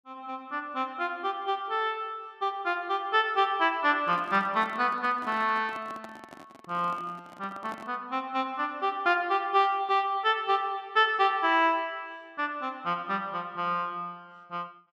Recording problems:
microphone handling noise; from 4 to 8 s; peak -11 dB vs average level

